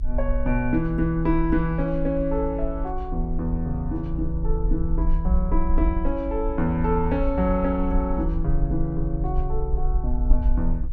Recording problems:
low-frequency rumble; below 54 Hz, SNR 3 dB

